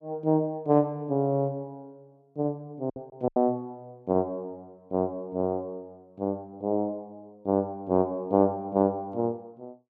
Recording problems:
lost packets; 1.8% of the sound replaced, filled with silence

